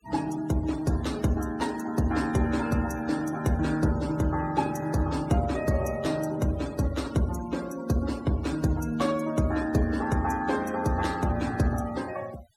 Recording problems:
noise reduction artefacts; signal-to-artefact ratio 18 dB

